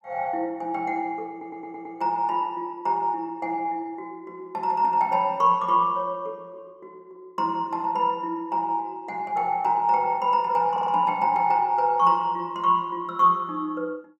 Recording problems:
audio stuttering; at 1.5 s and at 11 s

